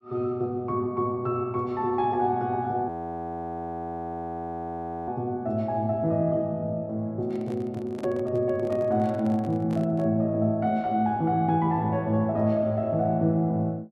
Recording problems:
audio freezing; at 3 s for 2 s
handling noise; from 7 to 10 s; peak -6 dB vs average level

